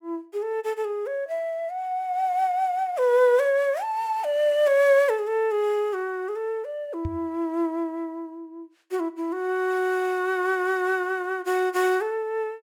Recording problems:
knock on the microphone; at 7 s; peak -3 dB vs average level

